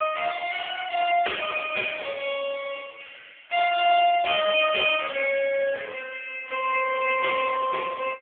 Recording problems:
phone line; 340 Hz to 3.3 kHz, AMR-NB

